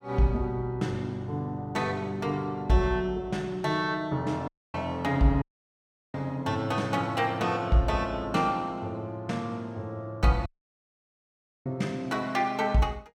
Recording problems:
audio cutting out; at 4.5 s, at 5.5 s for 0.5 s and at 10 s for 1 s

